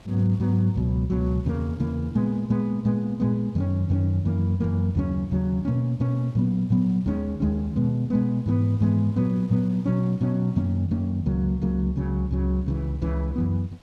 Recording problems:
wind on the microphone; below 1.1 kHz, SNR 29 dB

